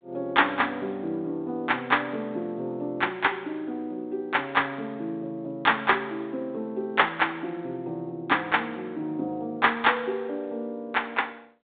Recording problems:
phone line; 220 Hz to 3.7 kHz, G.726

